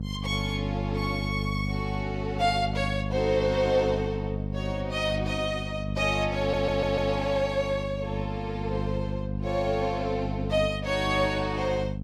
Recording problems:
hum; 50 Hz, harmonics up to 500 Hz, SNR 4 dB
audio stuttering; at 6.5 s

